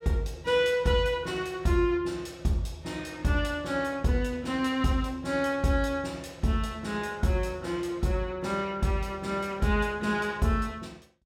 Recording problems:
none

